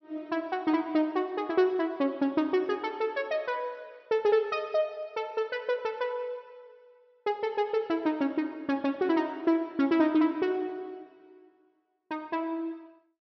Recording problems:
treble cut off; nothing above 5.9 kHz

